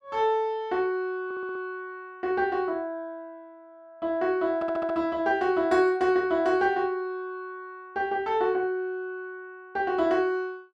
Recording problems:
audio stuttering; at 1.5 s and at 4.5 s

